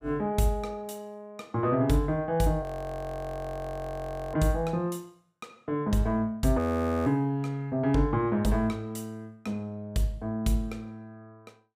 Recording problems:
audio freezing; at 2.5 s for 1.5 s and at 6.5 s

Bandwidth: 15.5 kHz